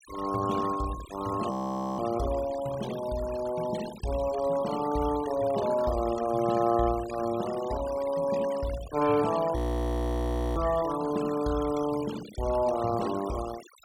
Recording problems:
denoising artefacts; signal-to-artefact ratio 14 dB
audio freezing; at 1.5 s and at 9.5 s for 1 s

